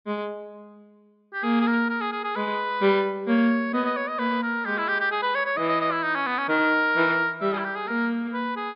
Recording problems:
treble cut off; nothing above 5.5 kHz

